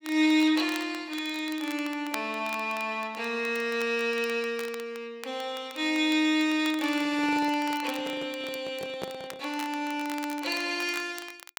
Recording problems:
crackling; vinyl, SNR 17 dB
microphone handling noise; from 7 to 9.5 s; peak -3 dB vs average level

